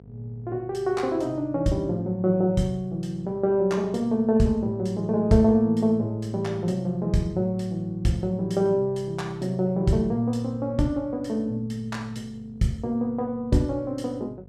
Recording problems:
hum; 50 Hz, harmonics up to 750 Hz, SNR 23 dB

